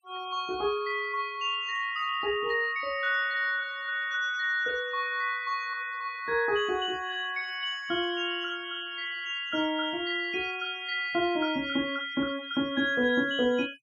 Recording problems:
denoising artefacts; signal-to-artefact ratio 21 dB

